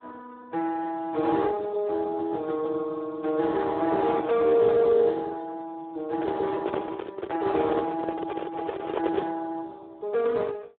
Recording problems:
telephone audio; 320 Hz to 2 kHz, Speex
microphone handling noise; from 6 to 9.5 s; peak +1 dB vs average level

